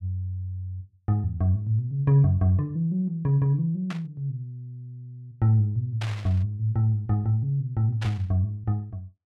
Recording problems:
burst of static; at 4 s, at 6 s and at 8 s; peak -7 dB vs average level

